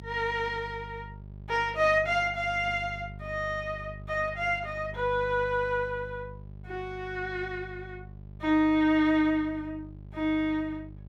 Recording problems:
mains hum; 50 Hz, harmonics up to 600 Hz, SNR 16 dB

